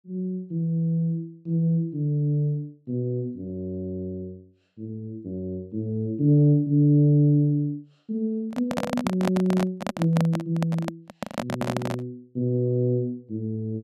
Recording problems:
microphone handling noise; from 8.5 to 12 s; peak +2 dB vs average level

